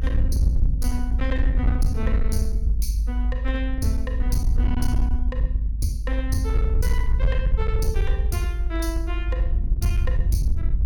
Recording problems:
distortion; hard clipping, uneven, signal-to-distortion ratio 11 dB
rumble; below 60 Hz, SNR -6 dB

